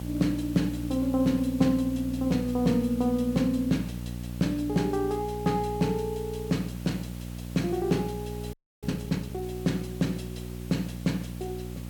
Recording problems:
hum; 60 Hz, harmonics up to 600 Hz, SNR 9 dB
hiss; slope -1 dB per octave, SNR 20 dB
audio freezing; at 8.5 s

